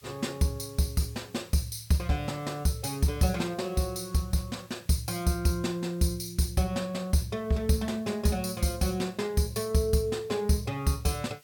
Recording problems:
hiss; slope +2 dB per octave, SNR 27 dB

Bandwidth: 17.5 kHz